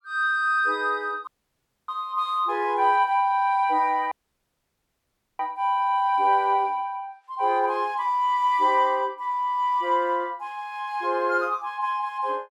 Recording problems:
audio cutting out; at 1.5 s for 0.5 s and at 4 s for 1.5 s

